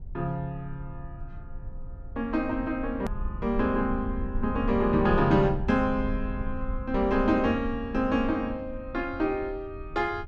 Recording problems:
rumble; below 70 Hz, SNR 11 dB
hard cut with a click; at 3 s

